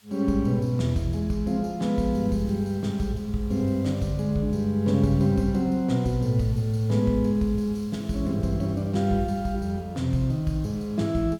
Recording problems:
hiss; slope +1 dB per octave, SNR 29 dB

